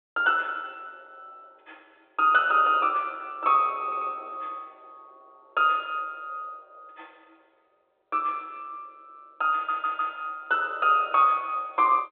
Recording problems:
telephone audio; 280 Hz to 3.8 kHz, G.726
stutter; at 4 s and at 9.5 s

